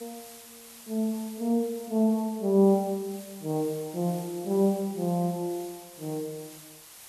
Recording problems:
hiss; slope +1 dB per octave, SNR 18 dB

